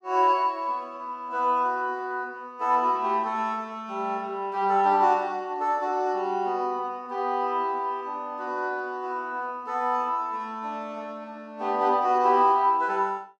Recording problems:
none

